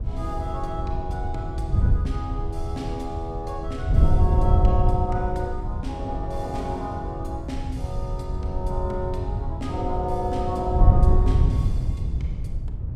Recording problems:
wind on the microphone; below 98 Hz, SNR -5 dB

